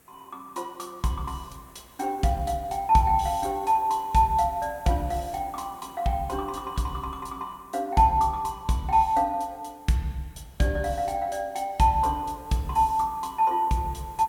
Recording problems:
background hiss; slope -5 dB per octave, SNR 27 dB

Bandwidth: 17 kHz